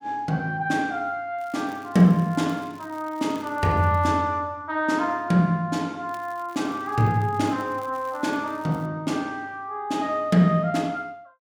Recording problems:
crackle; from 1.5 to 4 s and from 6 to 9 s; loose cable, SNR 28 dB

